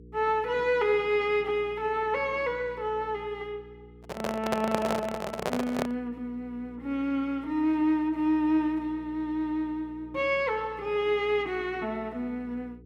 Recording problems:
electrical hum; 60 Hz, harmonics up to 480 Hz, SNR 21 dB
microphone handling noise; from 4 to 6 s; peak +4 dB vs average level

